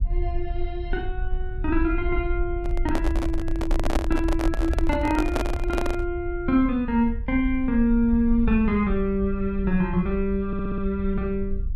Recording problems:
rumble; below 60 Hz, SNR 6 dB
handling noise; from 2.5 to 6 s; peak +2 dB vs average level
audio stuttering; at 10 s

